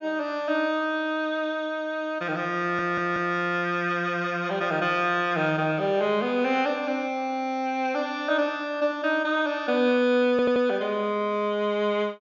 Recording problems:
treble missing; nothing above 7.1 kHz
stutter; at 2.5 s and at 10 s

